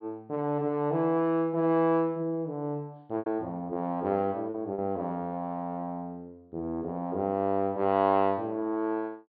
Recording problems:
treble cut off; nothing above 4.8 kHz
lost packets; 1.8% of the sound replaced, filled with repeated pitch periods

